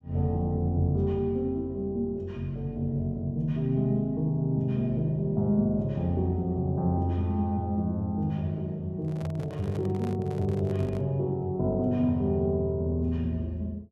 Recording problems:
microphone handling noise; from 9 to 11 s; peak -10 dB vs average level

